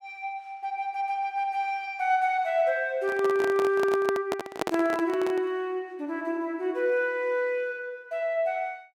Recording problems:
handling noise; from 3 to 5.5 s; peak +3 dB vs average level

